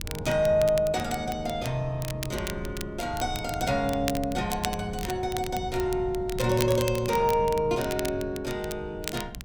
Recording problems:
wind on the microphone; below 160 Hz, SNR 12 dB
crackle; vinyl, SNR 12 dB

